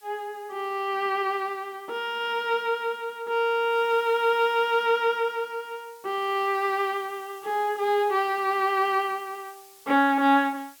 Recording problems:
hiss; slope +2 dB per octave, SNR 26 dB

